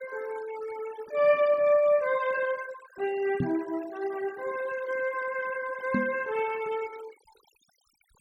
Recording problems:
noise reduction artefacts; signal-to-artefact ratio 20 dB
knock on the microphone; at 3.5 s and at 6 s; peak +3 dB vs average level

